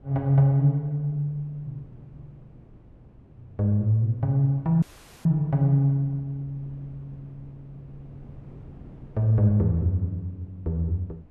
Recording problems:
wind noise; below 250 Hz, SNR 25 dB
audio cutting out; at 5 s

